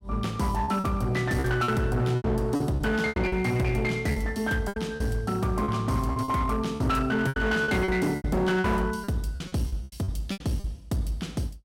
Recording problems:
distortion; hard clipping, uneven, signal-to-distortion ratio 10 dB
lost packets; 13% of the sound replaced, filled with repeated pitch periods

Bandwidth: 16 kHz